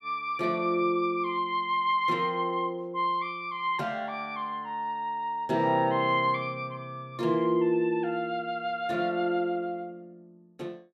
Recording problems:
none

